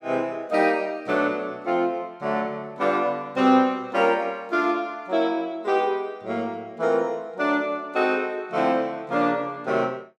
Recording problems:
none

